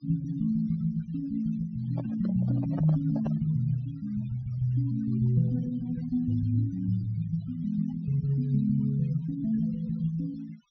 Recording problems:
treble missing; nothing above 6.2 kHz
noise reduction artefacts; signal-to-artefact ratio 22 dB
handling noise; from 2 to 3.5 s; peak -6 dB vs average level

